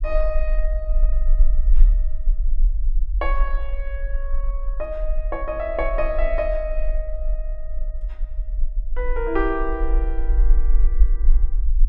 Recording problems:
rumble; below 40 Hz, strongest tone 18 Hz, SNR -3 dB

